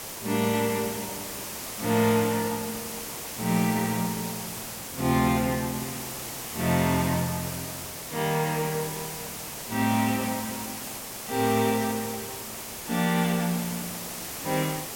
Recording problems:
hiss; slope -2 dB per octave, SNR 7 dB

